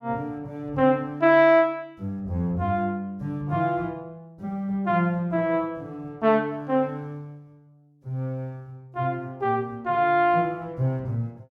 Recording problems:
none

